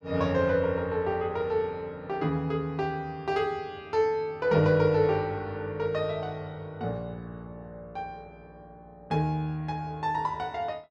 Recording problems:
none

